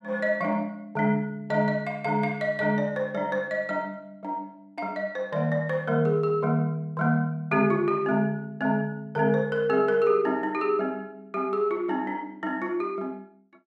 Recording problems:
none

